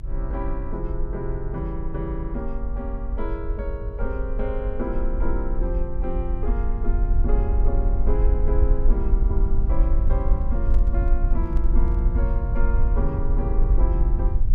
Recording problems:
rumble; below 50 Hz, SNR -7 dB
handling noise; from 10 to 12 s; peak -5 dB vs average level

